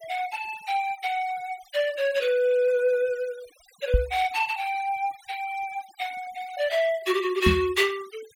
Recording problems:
denoising artefacts; signal-to-artefact ratio 20 dB
knock on the microphone; at 4 s and at 7.5 s; peak +7 dB vs average level

